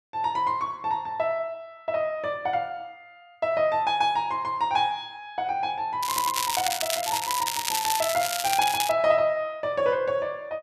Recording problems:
crackle; from 6 to 9 s; loose cable, SNR 2 dB

